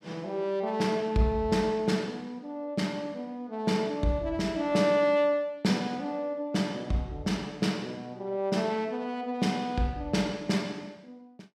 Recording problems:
none

